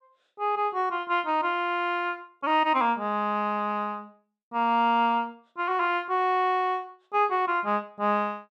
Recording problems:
none

